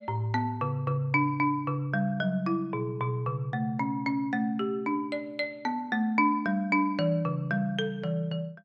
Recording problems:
none

